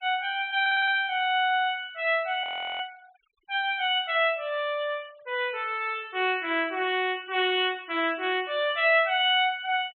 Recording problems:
treble cut off; nothing above 3.8 kHz
denoising artefacts; signal-to-artefact ratio 27 dB
stutter; at 0.5 s
frozen audio; at 2.5 s

